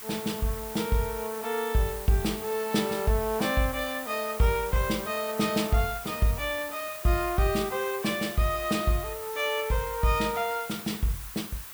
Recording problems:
background hiss; SNR 10 dB

